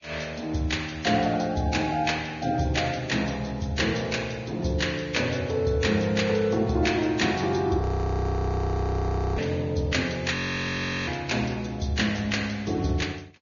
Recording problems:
treble missing; nothing above 6.9 kHz
lossy codec; Vorbis, log-spectral distance 4 dB
frozen audio; at 8 s for 1.5 s and at 10 s for 0.5 s

